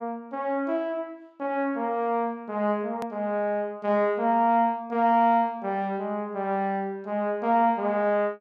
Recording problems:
edit click; at 3 s

